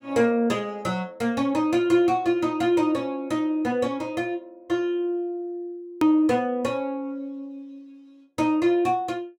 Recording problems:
hard cut with a click; at 6 s

